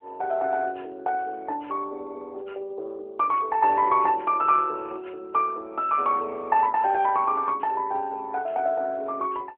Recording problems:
telephone audio; 280 Hz to 3.6 kHz, AMR-NB

